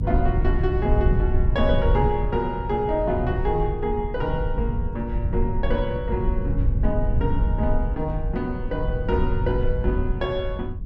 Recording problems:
rumble; below 90 Hz, SNR 0 dB

